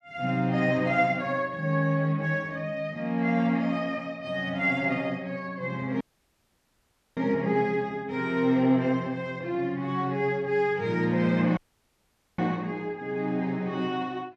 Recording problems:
dropout; at 6 s for 1 s and at 12 s for 1 s

